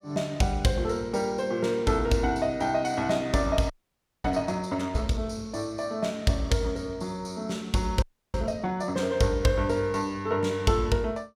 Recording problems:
frozen audio; at 3.5 s for 0.5 s and at 8 s

